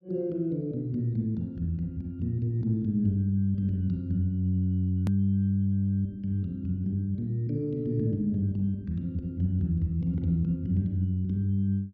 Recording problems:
edit click; at 5 s

